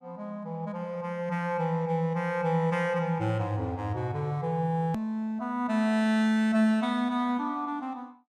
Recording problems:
edit click; at 5 s

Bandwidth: 14 kHz